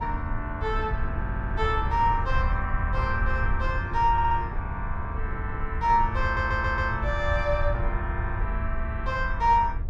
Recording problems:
rumble; below 80 Hz, SNR 4 dB
wind on the microphone; below 380 Hz, SNR 15 dB
stutter; at 1 s, at 4 s and at 6 s

